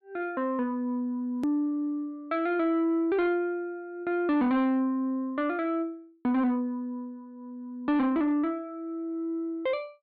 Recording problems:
low-pass filter; nothing above 4.7 kHz
distorted audio; soft clipping, signal-to-distortion ratio 11 dB
edit click; at 1.5 s

